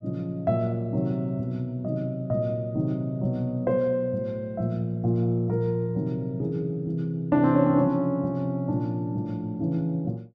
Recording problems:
none

